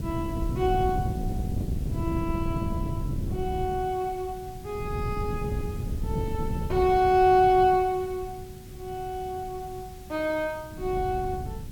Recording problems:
background hiss; slope +1 dB per octave, SNR 24 dB
wind on the microphone; below 170 Hz, SNR 6 dB

